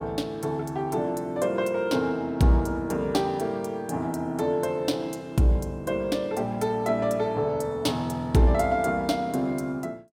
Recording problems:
none

